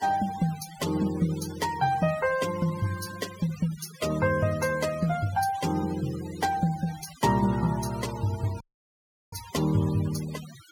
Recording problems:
noise reduction artefacts; signal-to-artefact ratio 15 dB
audio cutting out; at 8.5 s for 0.5 s

